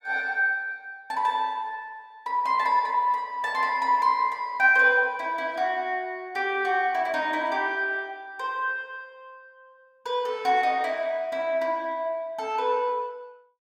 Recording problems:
none

